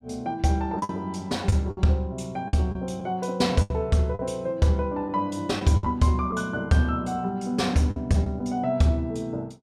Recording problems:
lost packets; 6% of the sound replaced, filled with the last packet

